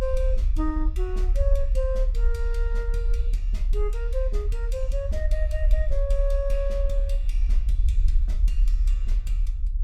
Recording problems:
low-frequency rumble; below 46 Hz, strongest tone 36 Hz, SNR -7 dB

